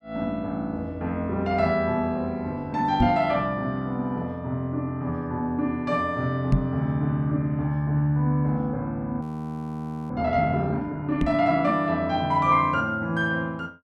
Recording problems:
microphone bump; at 3 s, at 6.5 s and at 11 s; peak +7 dB vs average level
frozen audio; at 9 s for 1 s

